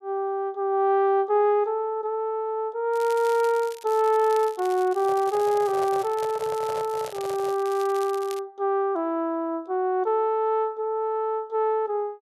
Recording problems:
crackling; from 3 to 8.5 s; loose cable, SNR 20 dB
microphone handling noise; from 5 to 7.5 s; peak -8 dB vs average level

